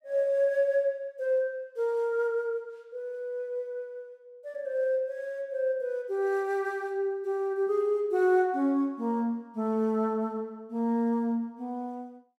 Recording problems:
none

